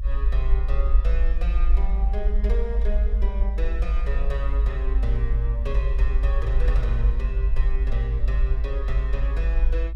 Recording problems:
rumble; below 52 Hz, strongest tone 50 Hz, SNR -10 dB

